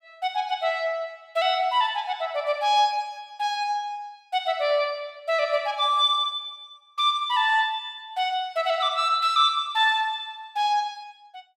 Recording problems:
none

